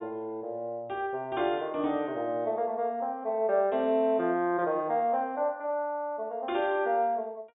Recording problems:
low-pass filter; nothing above 4 kHz

